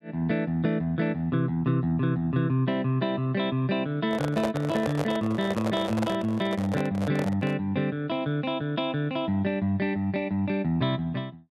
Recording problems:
microphone handling noise; from 4 to 7.5 s; peak +2 dB vs average level

